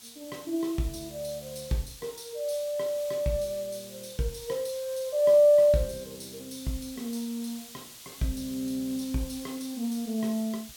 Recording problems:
hiss; slope +2 dB per octave, SNR 16 dB

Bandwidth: 17 kHz